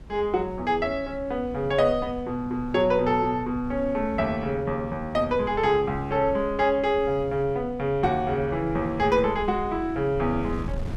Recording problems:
wind on the microphone; below 160 Hz, SNR 16 dB

